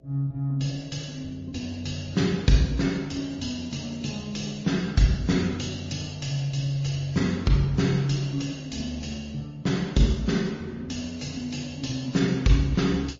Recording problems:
codec artefacts; Opus, then MP3, log-spectral distance 4 dB, nothing above 6.5 kHz
hum; 60 Hz, harmonics up to 660 Hz, SNR 31 dB

